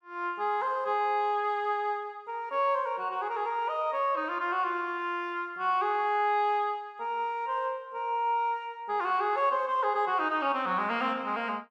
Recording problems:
none

